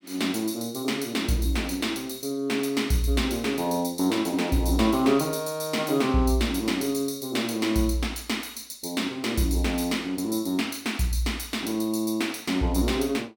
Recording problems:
none

